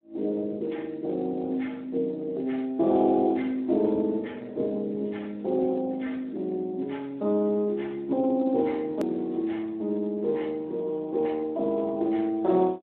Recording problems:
phone line; 240 Hz to 3.4 kHz, Speex
hard cut with a click; at 9 s

